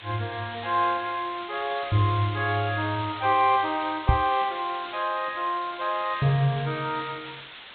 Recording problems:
treble cut off; nothing above 4 kHz
hiss; SNR 13 dB
microphone thump; at 4 s; peak +8 dB vs average level

